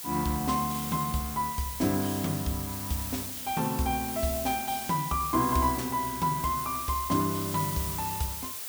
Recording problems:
hiss; slope +1 dB per octave, SNR 5 dB

